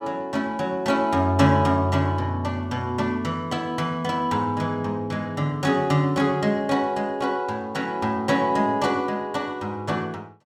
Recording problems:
none

